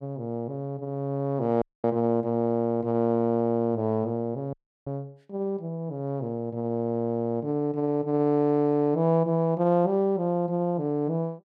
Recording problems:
dropout; at 1.5 s and at 4.5 s

